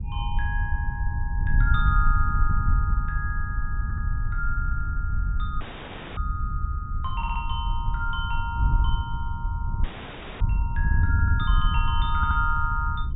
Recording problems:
treble cut off; nothing above 4 kHz
wind noise; below 82 Hz, SNR -4 dB
audio stuttering; 4 times, first at 4 s
audio cutting out; at 5.5 s for 0.5 s and at 10 s for 0.5 s

